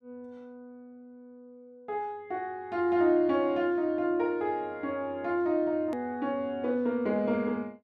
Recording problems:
click at an edit; at 6 s

